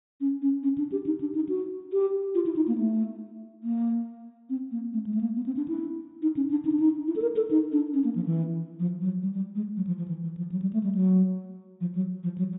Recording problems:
treble cut off; nothing above 4 kHz

